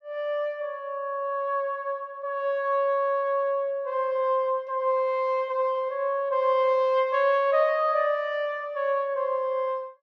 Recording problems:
none

